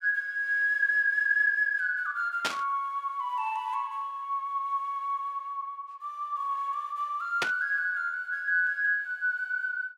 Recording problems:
static burst; at 2.5 s and at 7.5 s; peak +3 dB vs average level

